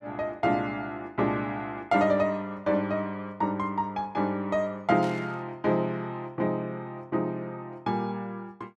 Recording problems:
static burst; at 5 s; peak -11 dB vs average level

